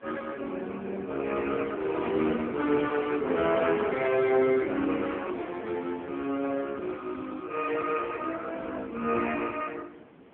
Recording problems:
phone line; 240 Hz to 3.4 kHz, AMR-NB
wind on the microphone; below 890 Hz, SNR 23 dB

